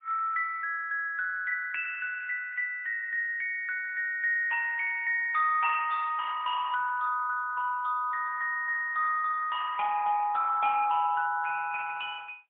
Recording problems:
phone line; 240 Hz to 2.4 kHz, AMR-NB, then MP3

